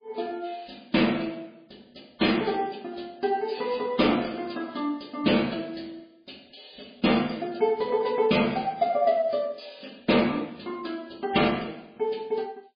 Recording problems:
lossy compression; MP3, log-spectral distance 6 dB, nothing above 4.2 kHz

